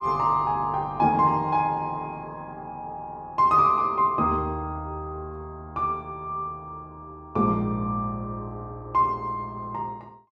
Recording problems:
none

